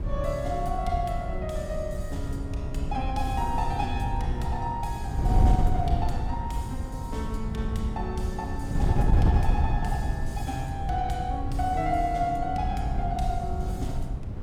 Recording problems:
wind noise; below 110 Hz, SNR -1 dB

